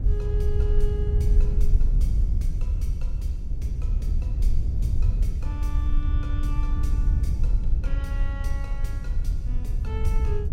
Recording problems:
wind on the microphone; below 64 Hz, SNR -11 dB

